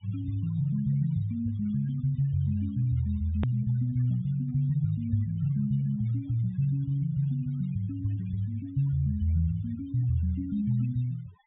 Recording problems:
treble missing; nothing above 4 kHz
denoising artefacts; signal-to-artefact ratio 26 dB
click at an edit; at 3.5 s

